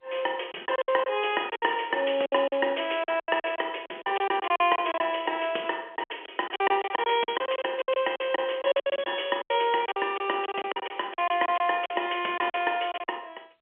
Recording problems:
phone line; 320 Hz to 3.4 kHz, G.711
lost packets; 15% of the sound replaced, filled with silence

